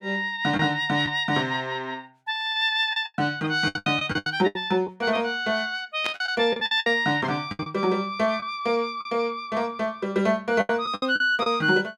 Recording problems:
lost packets; 9% of the sound replaced, filled with the last packet
static burst; at 6 s; peak -2 dB vs average level

